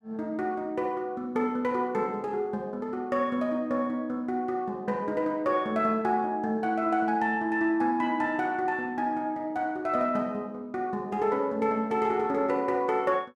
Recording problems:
none

